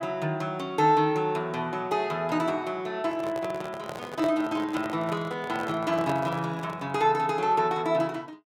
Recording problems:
microphone handling noise; from 3 to 7 s; peak -2 dB vs average level

